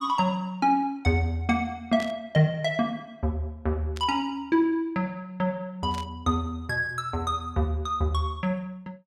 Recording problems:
burst of static; at 2 s, at 4 s and at 6 s; peak -9 dB vs average level

